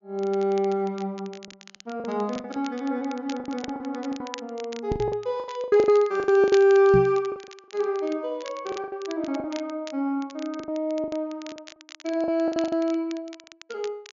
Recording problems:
treble missing; nothing above 7 kHz
crackling; vinyl, SNR 20 dB
lost packets; 13% of the sound replaced, filled with the last packet
microphone thump; at 5 s and at 7 s; peak +3 dB vs average level

